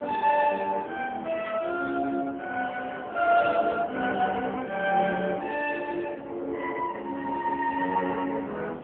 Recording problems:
telephone audio; 220 Hz to 2.8 kHz, AMR-NB
wind on the microphone; below 820 Hz, SNR 22 dB

